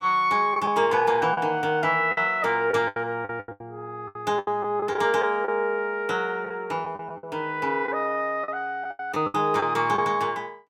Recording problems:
packet loss; 10% of the sound replaced, filled with the last packet

